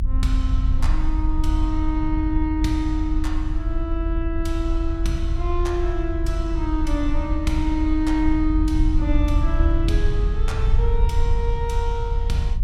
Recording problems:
low-frequency rumble; below 64 Hz, strongest tone 24 Hz, SNR -2 dB

